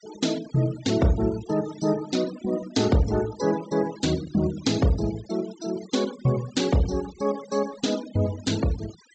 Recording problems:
treble cut off; nothing above 8 kHz
noise reduction artefacts; signal-to-artefact ratio 16 dB

